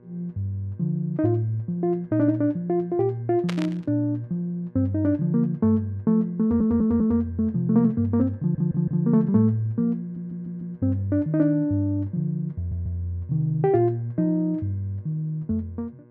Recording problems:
hum; 60 Hz, harmonics up to 1.6 kHz, SNR 28 dB
static burst; at 3.5 s; peak -4 dB vs average level
audio stuttering; 4 times, first at 6.5 s

